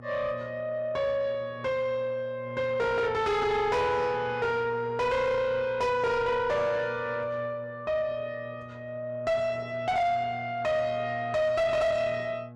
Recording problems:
distorted audio; soft clipping, signal-to-distortion ratio 8 dB
hum; 60 Hz, harmonics up to 1.3 kHz, SNR 15 dB

